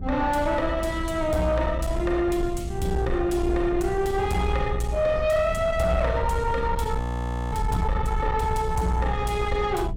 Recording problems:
distortion; soft clipping, signal-to-distortion ratio 11 dB
hum; 60 Hz, harmonics up to 420 Hz, SNR 14 dB
low-frequency rumble; below 110 Hz, SNR 7 dB
audio freezing; at 7 s for 0.5 s

